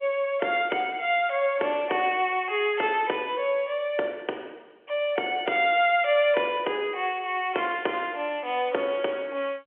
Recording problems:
telephone audio; 320 Hz to 3.3 kHz, G.711

